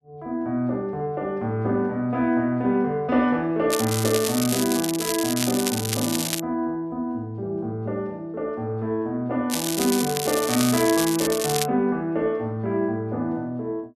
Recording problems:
crackle; from 3.5 to 6.5 s and from 9.5 to 12 s; loose cable, SNR 3 dB

